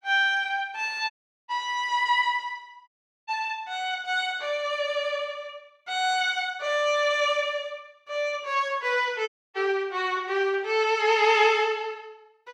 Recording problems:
dropout; at 1 s, at 3 s and at 9.5 s

